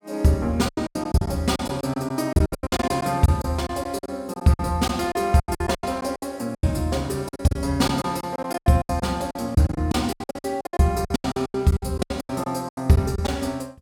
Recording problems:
packet loss; 20% of the sound replaced, filled with silence

